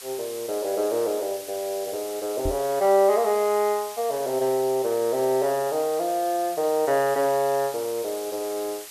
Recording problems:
hiss; slope +2 dB per octave, SNR 14 dB
microphone thump; at 2.5 s; peak -2 dB vs average level

